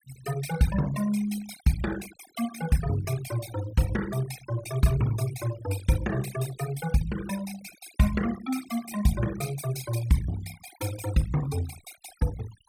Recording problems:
noise reduction artefacts; signal-to-artefact ratio 13 dB

